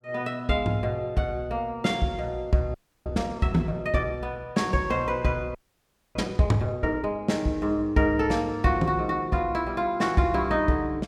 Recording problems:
audio freezing; at 2.5 s and at 5.5 s for 0.5 s

